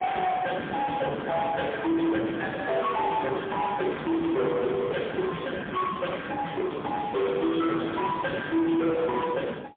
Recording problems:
telephone audio; 190 Hz to 3.6 kHz, AMR-NB, then MP3
distorted audio; soft clipping, signal-to-distortion ratio 6 dB

